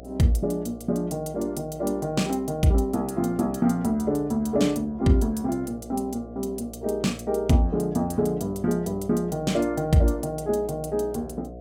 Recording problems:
electrical hum; 60 Hz, harmonics up to 720 Hz, SNR 17 dB

